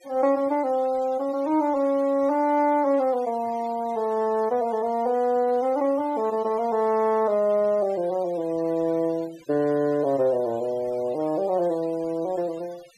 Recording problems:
denoising artefacts; signal-to-artefact ratio 24 dB

